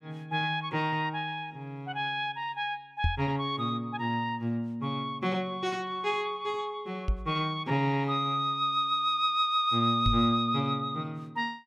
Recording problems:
microphone bump; at 3 s, at 7 s and at 10 s; peak +4 dB vs average level

